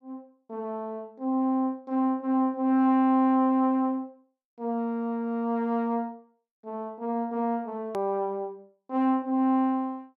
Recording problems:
click at an edit; at 8 s

